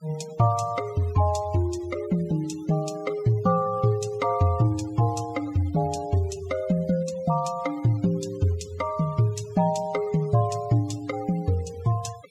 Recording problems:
denoising artefacts; signal-to-artefact ratio 23 dB

